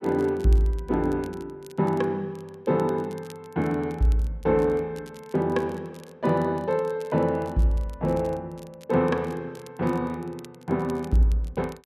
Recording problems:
crackling; vinyl, SNR 28 dB

